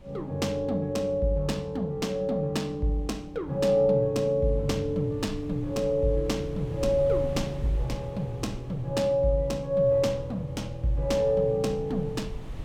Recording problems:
wind on the microphone; below 120 Hz, SNR 16 dB

